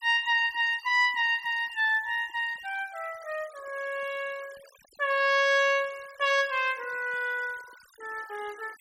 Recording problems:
denoising artefacts; signal-to-artefact ratio 22 dB

